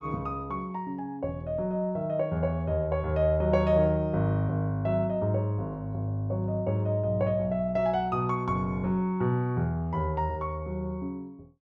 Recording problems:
none

